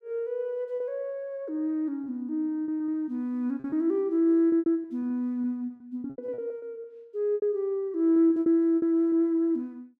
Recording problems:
packet loss; 11% of the sound replaced, filled with repeated pitch periods

